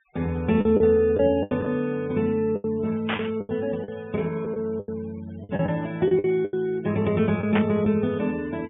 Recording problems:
treble missing; nothing above 3.4 kHz
noise reduction artefacts; signal-to-artefact ratio 25 dB
lost packets; 9% of the sound replaced, filled with the last packet
burst of static; at 3 s and at 7.5 s; peak 0 dB vs average level

